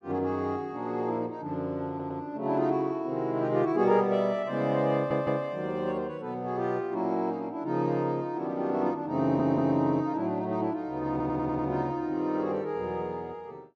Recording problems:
stutter; 4 times, first at 2 s

